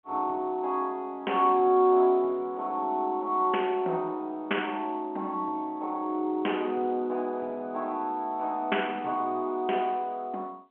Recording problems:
telephone audio; 240 Hz to 3.2 kHz, G.711

